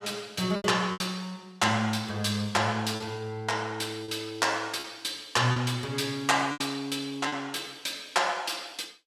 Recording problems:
lost packets; 5% of the sound replaced, filled with repeated pitch periods

